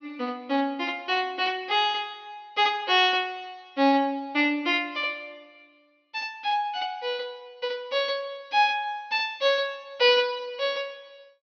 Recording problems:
low-pass filter; nothing above 6.2 kHz

